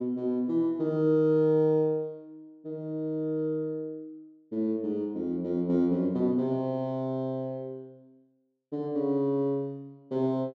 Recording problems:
none

